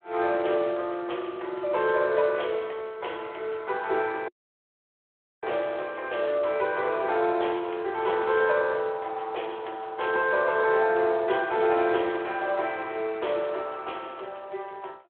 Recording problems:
phone line; 320 Hz to 3.6 kHz, Speex
audio cutting out; at 4.5 s for 1 s

